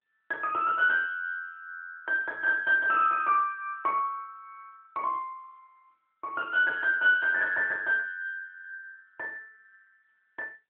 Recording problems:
telephone audio; 300 Hz to 3.1 kHz, AMR-NB

